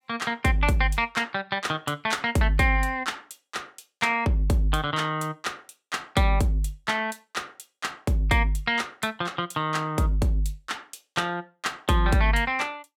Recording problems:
none

